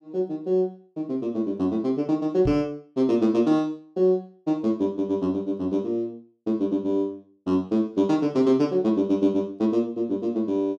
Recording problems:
knock on the microphone; at 2.5 s; peak -1 dB vs average level

